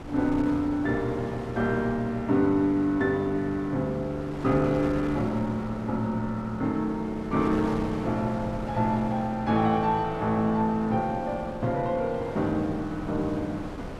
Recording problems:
wind on the microphone; below 730 Hz, SNR 12 dB

